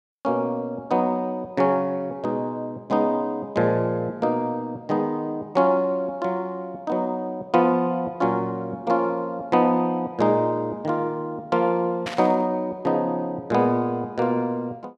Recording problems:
burst of static; at 12 s; peak -3 dB vs average level

